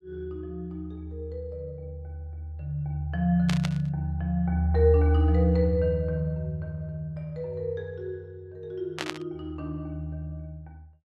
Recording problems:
burst of static; at 3.5 s and at 9 s; peak +1 dB vs average level

